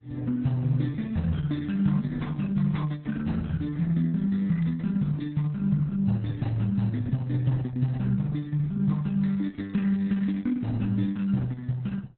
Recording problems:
lossy compression; Opus, then AAC, log-spectral distance 2 dB, nothing above 3.9 kHz

